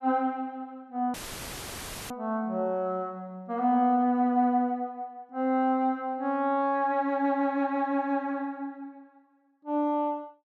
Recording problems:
audio cutting out; at 1 s for 1 s; filled with static

